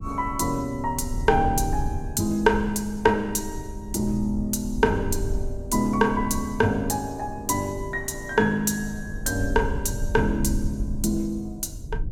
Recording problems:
rumble; below 82 Hz, SNR 9 dB

